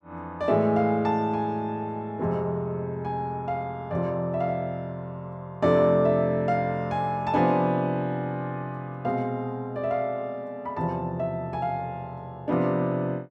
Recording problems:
none

